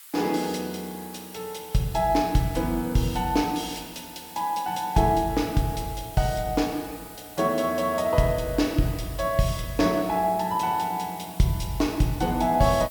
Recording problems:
background hiss; SNR 17 dB

